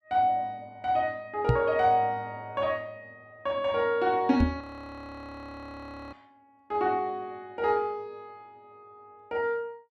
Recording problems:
knock on the microphone; at 1.5 s and at 4.5 s; peak +7 dB vs average level
frozen audio; at 4.5 s for 1.5 s

